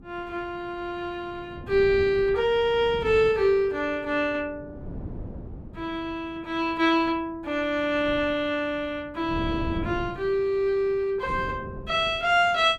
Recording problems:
wind on the microphone; below 250 Hz, SNR 15 dB

